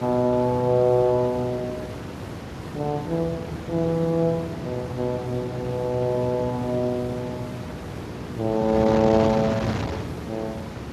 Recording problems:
codec artefacts; Speex, log-spectral distance 3 dB
hum; 60 Hz, harmonics up to 480 Hz, SNR 15 dB
background hiss; SNR 25 dB
wind noise; below 830 Hz, SNR 8 dB

